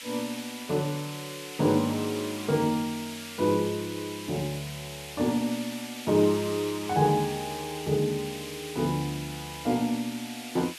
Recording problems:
hiss; SNR 10 dB

